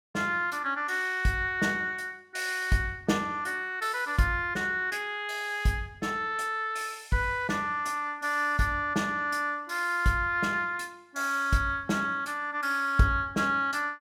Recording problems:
none

